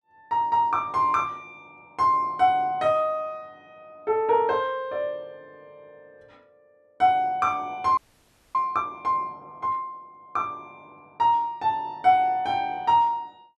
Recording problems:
frozen audio; at 8 s for 0.5 s

